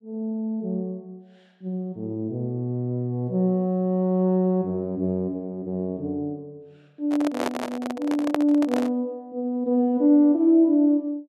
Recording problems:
handling noise; from 7 to 9 s; peak +2 dB vs average level

